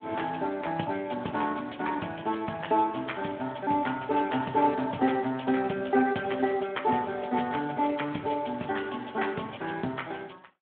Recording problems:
telephone audio; 190 Hz to 3.4 kHz, Speex

